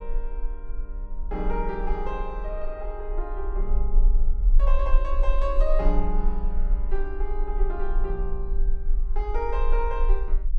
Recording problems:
low-frequency rumble; below 36 Hz, strongest tone 20 Hz, SNR -4 dB

